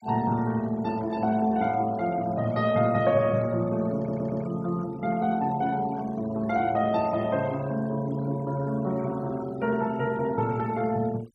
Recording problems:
noise reduction artefacts; signal-to-artefact ratio 21 dB
stutter; at 4 s

